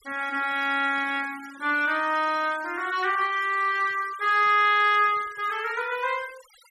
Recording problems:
denoising artefacts; signal-to-artefact ratio 21 dB

